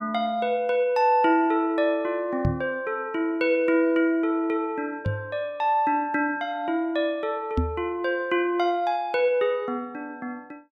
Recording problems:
microphone thump; at 2.5 s, at 5 s and at 7.5 s; peak +3 dB vs average level

